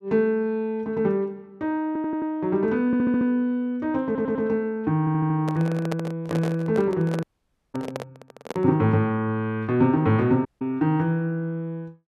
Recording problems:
stutter; 4 times, first at 2 s
microphone handling noise; from 5.5 to 8.5 s; peak -1 dB vs average level
audio cutting out; at 7 s for 0.5 s and at 10 s

